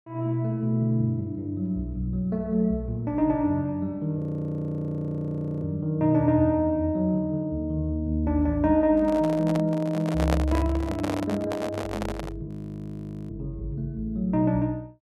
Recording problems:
audio freezing; at 4 s for 1.5 s and at 12 s for 1 s
microphone handling noise; from 9 to 12 s; peak +3 dB vs average level

